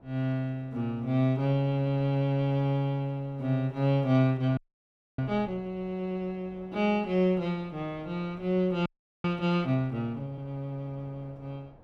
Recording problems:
wind noise; below 650 Hz, SNR 25 dB
audio freezing; at 4.5 s for 0.5 s and at 9 s

